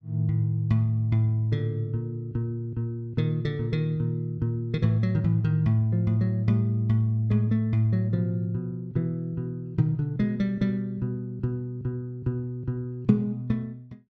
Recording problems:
none

